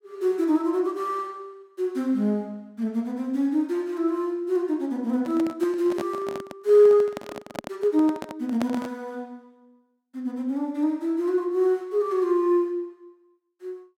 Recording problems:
handling noise; from 5 to 9 s; peak -2 dB vs average level

